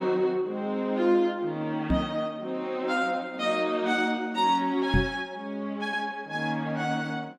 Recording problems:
microphone thump; at 2 s and at 5 s; peak +6 dB vs average level

